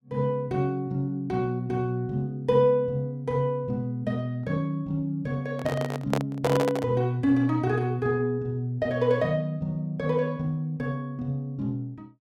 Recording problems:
handling noise; from 5.5 to 7 s; peak +4 dB vs average level

